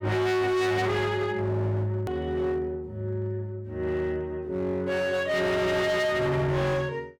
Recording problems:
distortion; hard clipping, signal-to-distortion ratio 7 dB
edit click; at 2 s

